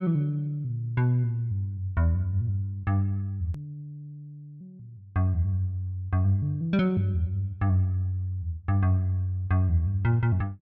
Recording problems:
click at an edit; at 3.5 s

